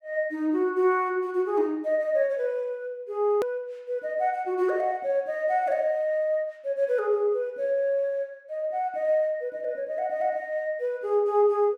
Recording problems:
click at an edit; at 3.5 s

